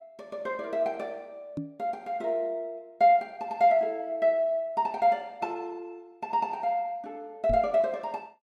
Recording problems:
microphone thump; at 1.5 s and at 7.5 s; peak -3 dB vs average level

